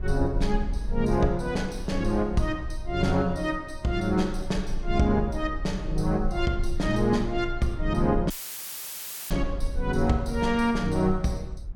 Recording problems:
rumble; below 46 Hz, strongest tone 20 Hz, SNR 9 dB
audio cutting out; at 8.5 s for 1 s; filled with static

